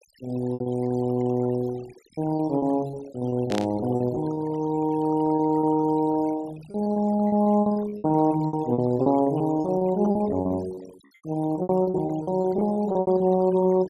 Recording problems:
noise reduction artefacts; signal-to-artefact ratio 21 dB
packet loss; 17% of the sound replaced, filled with repeated pitch periods
burst of static; at 3.5 s; peak -5 dB vs average level

